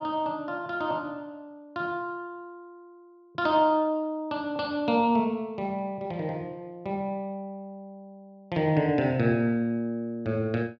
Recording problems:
none

